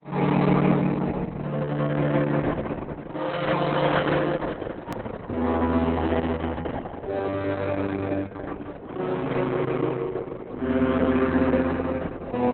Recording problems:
codec artefacts; Opus, log-spectral distance 4 dB, nothing above 19.5 kHz
hard cut with a click; at 5 s

